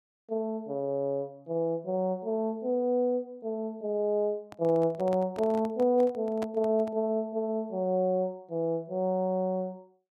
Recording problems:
microphone handling noise; from 4.5 to 7 s; peak -6 dB vs average level

